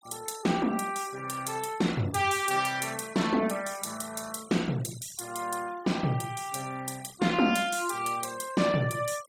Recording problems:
noise reduction artefacts; signal-to-artefact ratio 17 dB

